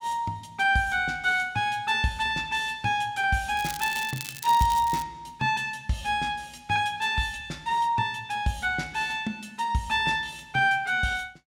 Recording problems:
crackling; from 3.5 to 5 s; loose cable, SNR 11 dB

